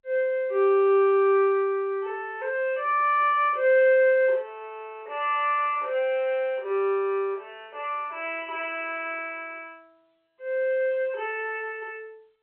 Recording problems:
phone line; 340 Hz to 3.1 kHz, G.711

